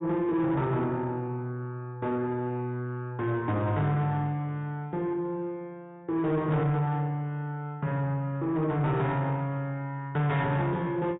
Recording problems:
treble missing; nothing above 4 kHz
distortion; soft clipping, signal-to-distortion ratio 11 dB

